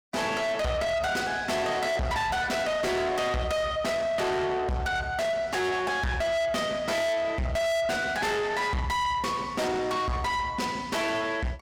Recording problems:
distortion; soft clipping, signal-to-distortion ratio 6 dB

